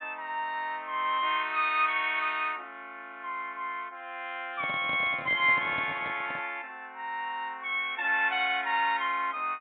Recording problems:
treble missing; nothing above 4 kHz
handling noise; from 4.5 to 6.5 s; peak -8 dB vs average level

